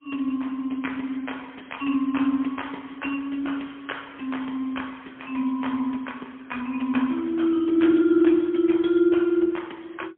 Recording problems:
phone line; 190 Hz to 3.4 kHz, AMR-NB, then MP3

